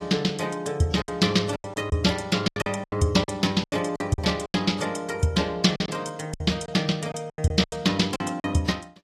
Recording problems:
codec artefacts; AAC, log-spectral distance 3 dB
packet loss; 12% of the sound replaced, filled with silence

